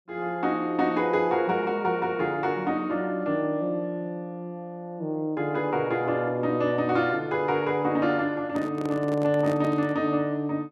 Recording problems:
handling noise; from 8.5 to 10 s; peak -7 dB vs average level

